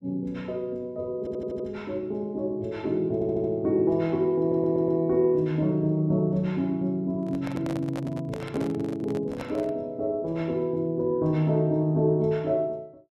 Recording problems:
stutter; at 1 s, at 3 s and at 4.5 s
microphone handling noise; from 7 to 9.5 s; peak -6 dB vs average level

